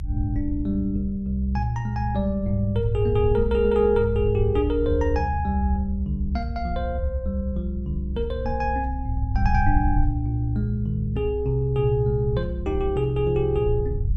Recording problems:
rumble; below 66 Hz, SNR 5 dB

